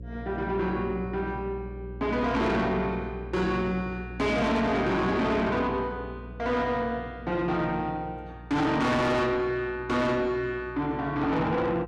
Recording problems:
distortion; soft clipping, signal-to-distortion ratio 8 dB
hum; 60 Hz, harmonics up to 540 Hz, SNR 15 dB

